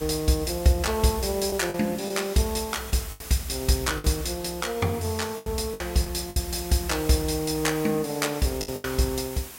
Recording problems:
background hiss; slope -1 dB per octave, SNR 13 dB
lost packets; 6% of the sound replaced, filled with the last packet

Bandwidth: 16 kHz